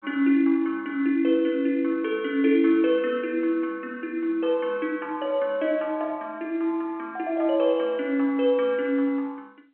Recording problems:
phone line; 240 Hz to 3.3 kHz, G.711

